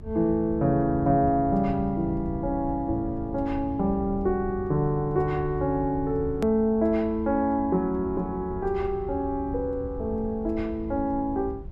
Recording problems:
low-frequency rumble; below 98 Hz, SNR 13 dB
hard cut with a click; at 6.5 s

